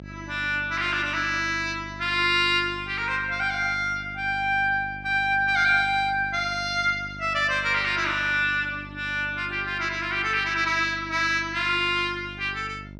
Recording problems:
hum; 50 Hz, harmonics up to 700 Hz, SNR 18 dB

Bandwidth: 13 kHz